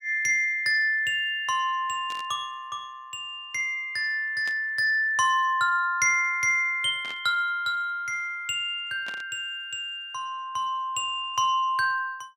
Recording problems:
static burst; 4 times, first at 2 s; peak -11 dB vs average level

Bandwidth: 16 kHz